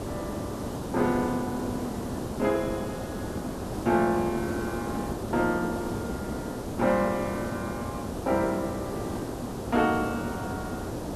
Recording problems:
hiss; SNR 4 dB

